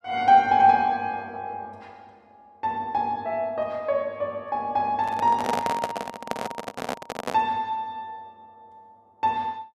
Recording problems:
microphone handling noise; from 5 to 7.5 s; peak 0 dB vs average level

